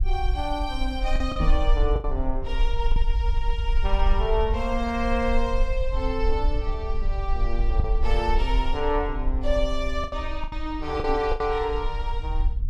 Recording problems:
rumble; below 48 Hz, SNR 0 dB
lost packets; 4% of the sound replaced, filled with the last packet
microphone bump; at 1.5 s and at 11 s; peak +3 dB vs average level

